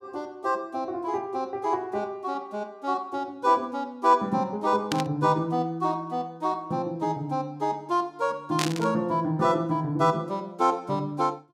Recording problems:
burst of static; at 5 s and at 8.5 s; peak +2 dB vs average level

